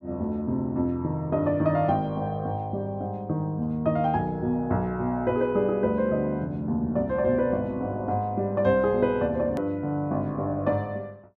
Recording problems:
hard cut with a click; at 9.5 s

